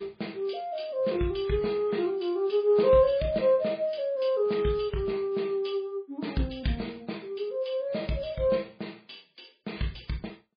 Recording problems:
lossy codec; MP3, log-spectral distance 4 dB, nothing above 4.6 kHz

